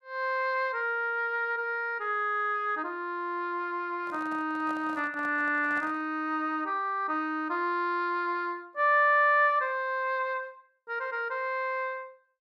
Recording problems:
microphone handling noise; from 4 to 6 s; peak -12 dB vs average level

